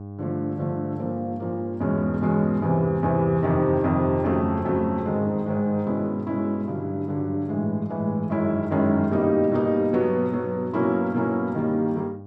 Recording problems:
hum; 50 Hz, harmonics up to 800 Hz, SNR 15 dB

